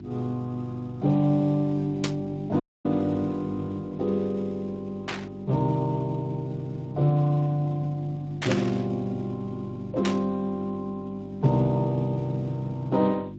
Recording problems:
codec artefacts; Speex, log-spectral distance 2 dB
hum; 50 Hz, harmonics up to 400 Hz, SNR 14 dB
static burst; 4 times, first at 2 s; peak +2 dB vs average level
audio cutting out; at 2.5 s

